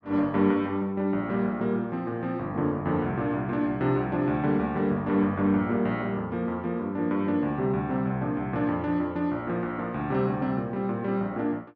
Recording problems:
none

